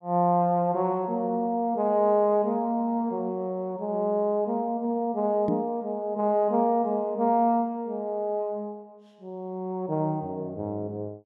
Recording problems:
knock on the microphone; at 5.5 s; peak +1 dB vs average level

